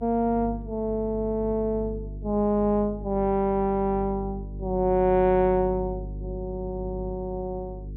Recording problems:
treble missing; nothing above 4 kHz
electrical hum; 50 Hz, harmonics up to 450 Hz, SNR 11 dB

